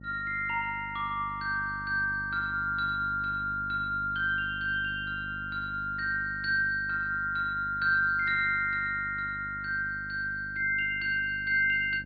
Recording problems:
treble missing; nothing above 4.9 kHz
electrical hum; 50 Hz, harmonics up to 600 Hz, SNR 17 dB

